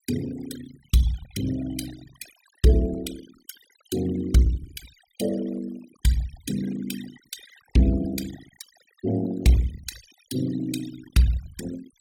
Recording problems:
noise reduction artefacts; signal-to-artefact ratio 12 dB

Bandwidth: 17 kHz